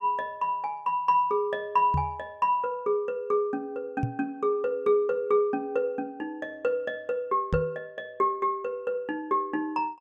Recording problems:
microphone thump; at 2 s, at 4 s and at 7.5 s; peak +3 dB vs average level

